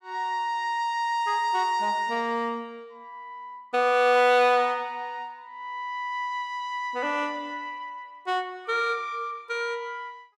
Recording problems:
none

